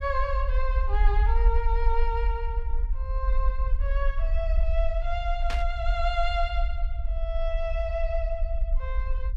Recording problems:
rumble; below 50 Hz, SNR -4 dB
static burst; at 5.5 s; peak +1 dB vs average level

